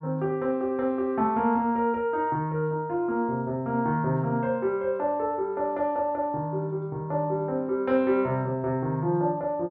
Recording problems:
none

